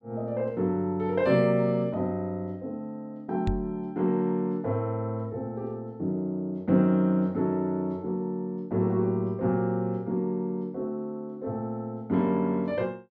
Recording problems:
microphone thump; at 3.5 s; peak +2 dB vs average level

